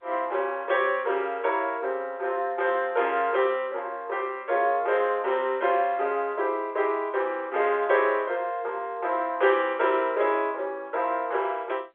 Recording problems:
phone line; 340 Hz to 3.5 kHz, G.711

